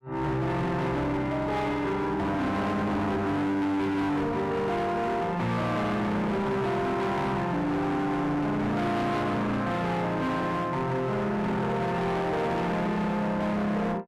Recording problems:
distortion; hard clipping, uneven, signal-to-distortion ratio 7 dB

